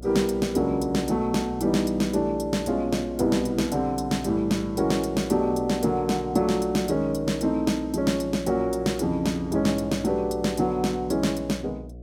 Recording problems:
hum; 60 Hz, harmonics up to 720 Hz, SNR 16 dB

